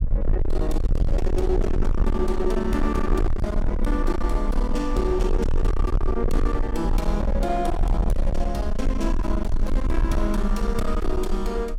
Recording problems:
distorted audio; hard clipping, signal-to-distortion ratio 6 dB
rumble; below 52 Hz, strongest tone 22 Hz, SNR 0 dB

